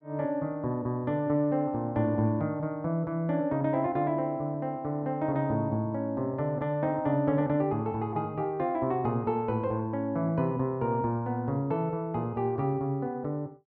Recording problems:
none

